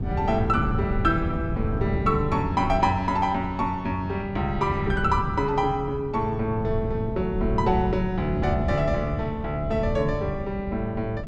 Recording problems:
wind on the microphone; below 170 Hz, SNR 6 dB

